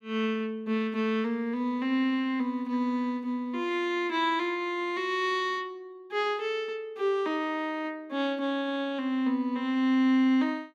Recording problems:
none

